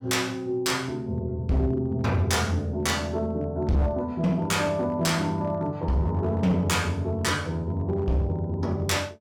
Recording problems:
distortion; hard clipping, uneven, signal-to-distortion ratio 10 dB

